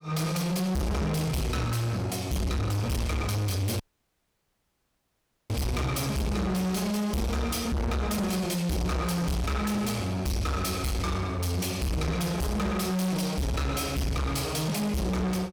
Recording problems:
distortion; soft clipping, signal-to-distortion ratio 6 dB
dropout; at 4 s for 1.5 s

